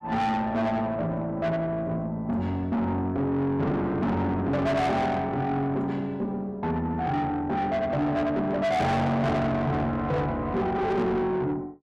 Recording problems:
distortion; soft clipping, signal-to-distortion ratio 7 dB

